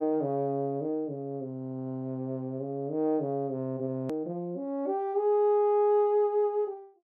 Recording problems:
hard cut with a click; at 4 s

